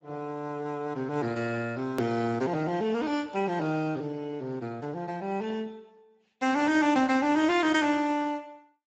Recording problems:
lossy compression; Speex, log-spectral distance 3 dB, nothing above 17.1 kHz
edit click; at 2 s

